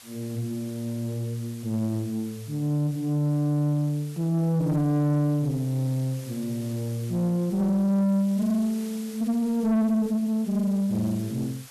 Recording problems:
distortion; soft clipping, signal-to-distortion ratio 11 dB
background hiss; slope +1 dB per octave, SNR 20 dB

